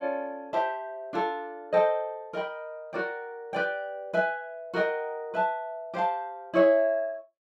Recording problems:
none

